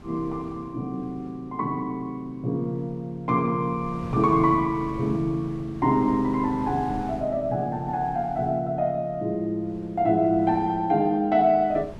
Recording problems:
wind noise; below 340 Hz, SNR 18 dB

